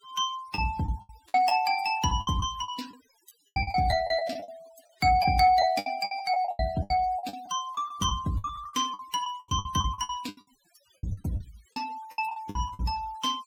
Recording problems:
denoising artefacts; signal-to-artefact ratio 21 dB
lost packets; 18% of the sound replaced, filled with the last packet

